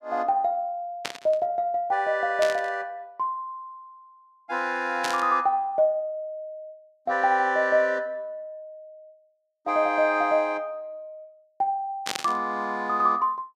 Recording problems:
burst of static; 4 times, first at 1 s; peak +1 dB vs average level

